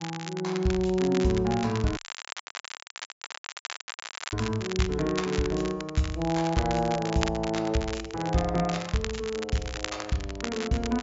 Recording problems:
treble missing; nothing above 7.5 kHz
crackle; vinyl, SNR 10 dB
audio cutting out; at 2 s for 2.5 s

